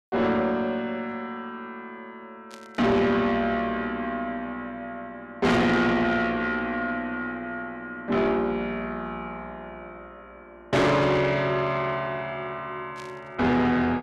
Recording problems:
distorted audio; soft clipping, signal-to-distortion ratio 7 dB
burst of static; 4 times, first at 2.5 s; peak -13 dB vs average level

